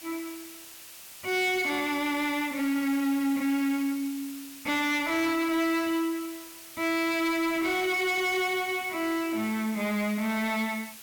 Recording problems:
distortion; soft clipping, signal-to-distortion ratio 12 dB
hiss; slope +2 dB per octave, SNR 15 dB

